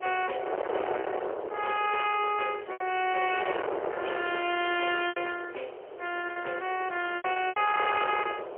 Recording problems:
telephone audio; 300 Hz to 3.2 kHz, AMR-NB, then MP3
distortion; hard clipping, signal-to-distortion ratio 10 dB
hiss; SNR 27 dB
wind on the microphone; below 1 kHz, SNR 7 dB
lost packets; 5% of the sound replaced, filled with repeated pitch periods

